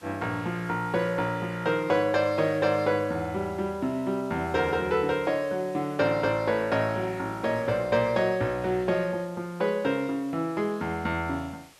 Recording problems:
hiss; slope -1 dB per octave, SNR 25 dB

